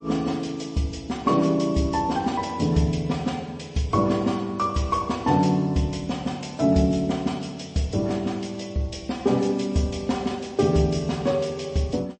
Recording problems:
lossy compression; MP3, log-spectral distance 3 dB, nothing above 8.2 kHz

